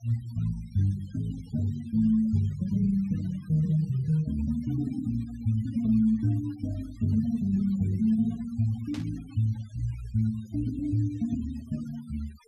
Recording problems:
noise reduction artefacts; signal-to-artefact ratio 24 dB
static burst; at 9 s; peak -11 dB vs average level

